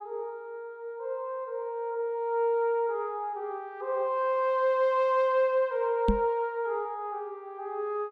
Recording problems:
microphone thump; at 6 s; peak +6 dB vs average level

